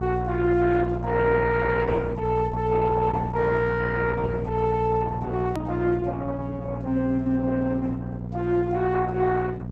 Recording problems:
lossy compression; Opus, log-spectral distance 3 dB, nothing above 13.1 kHz
hum; 60 Hz, harmonics up to 720 Hz, SNR 6 dB
click at an edit; at 5.5 s

